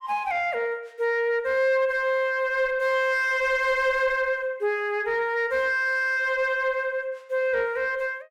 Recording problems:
distortion; soft clipping, signal-to-distortion ratio 11 dB

